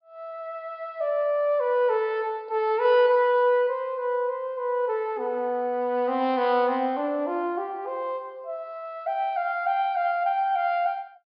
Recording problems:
treble missing; nothing above 5.2 kHz

